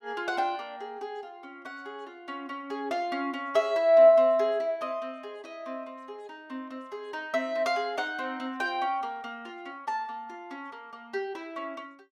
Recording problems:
none

